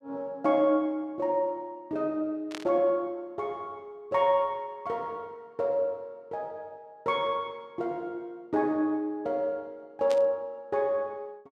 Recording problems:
burst of static; at 2.5 s and at 10 s; peak -5 dB vs average level

